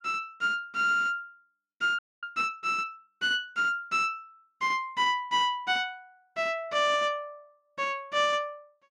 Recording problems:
frozen audio; at 2 s

